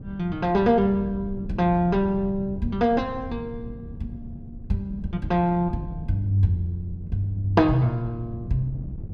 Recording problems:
wind on the microphone; below 150 Hz, SNR 13 dB

